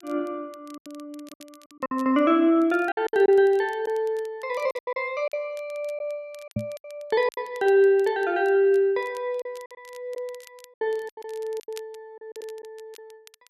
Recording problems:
crackle; vinyl, SNR 29 dB
lost packets; 10% of the sound replaced, filled with silence
knock on the microphone; at 6.5 s; peak -1 dB vs average level

